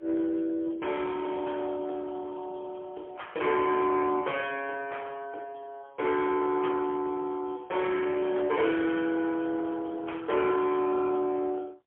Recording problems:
telephone audio; 300 Hz to 3.3 kHz, AMR-NB, then MP3

